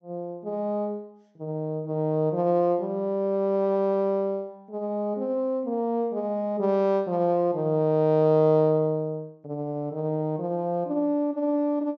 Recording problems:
treble cut off; nothing above 8 kHz

